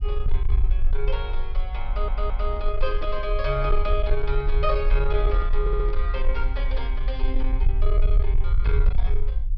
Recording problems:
low-pass filter; nothing above 5.5 kHz
distortion; soft clipping, signal-to-distortion ratio 11 dB
rumble; below 44 Hz, strongest tone 20 Hz, SNR -4 dB
audio stuttering; at 2 s and at 5.5 s
microphone handling noise; from 2 to 6 s; peak -5 dB vs average level

